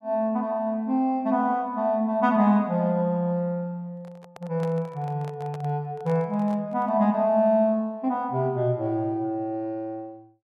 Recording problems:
handling noise; from 4 to 7 s; peak -10 dB vs average level

